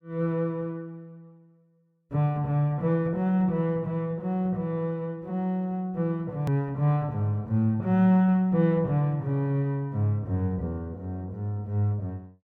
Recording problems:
click at an edit; at 6.5 s

